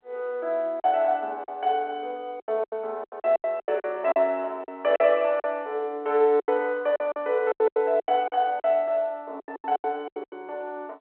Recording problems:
phone line; 340 Hz to 3.3 kHz, G.711
lost packets; 15% of the sound replaced, filled with silence

